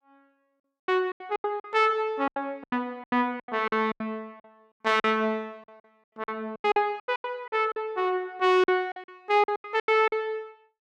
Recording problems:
lost packets; 17% of the sound replaced, filled with silence

